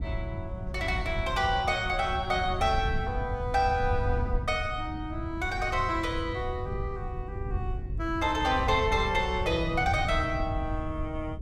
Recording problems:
wind on the microphone; below 100 Hz, SNR 6 dB

